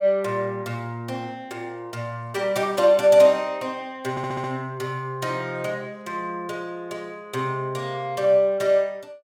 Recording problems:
stutter; at 4 s

